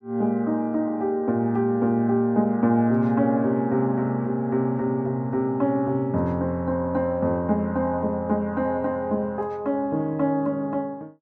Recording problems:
none

